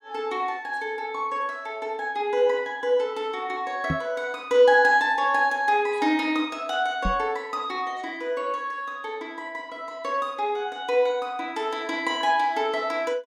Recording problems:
microphone thump; at 4 s and at 7 s; peak +1 dB vs average level

